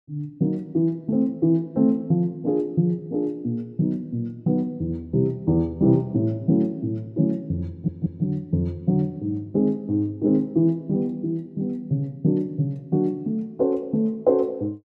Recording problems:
audio stuttering; at 7.5 s

